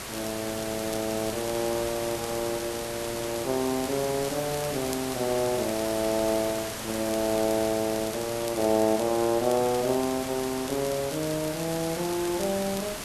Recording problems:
background hiss; slope -3 dB per octave, SNR 6 dB
crackling; vinyl, SNR 16 dB

